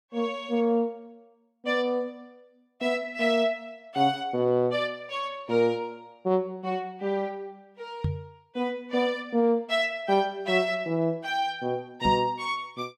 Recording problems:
microphone thump; at 8 s and at 12 s; peak +3 dB vs average level

